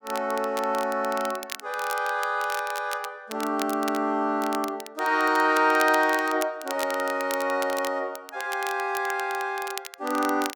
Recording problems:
crackling; vinyl, SNR 13 dB

